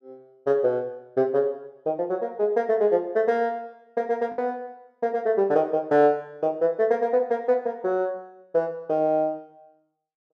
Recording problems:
packet loss; 0.7% of the sound replaced, filled with the last packet

